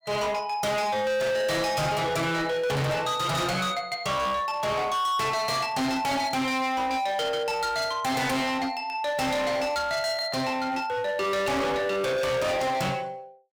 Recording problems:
distortion; hard clipping, signal-to-distortion ratio 6 dB

